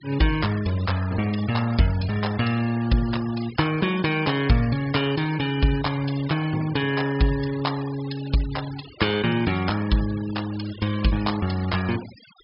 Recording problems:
treble missing; nothing above 5.5 kHz
noise reduction artefacts; signal-to-artefact ratio 16 dB

